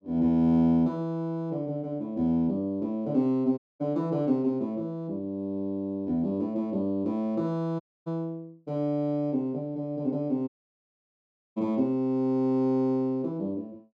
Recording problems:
audio cutting out; at 3.5 s, at 8 s and at 10 s for 1 s

